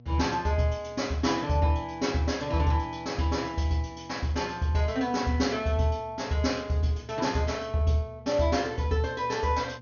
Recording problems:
treble missing; nothing above 6.6 kHz
electrical hum; 60 Hz, harmonics up to 720 Hz, SNR 22 dB

